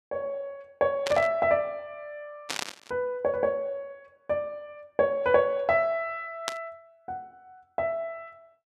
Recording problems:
static burst; at 1 s, at 2.5 s and at 6.5 s; peak +2 dB vs average level

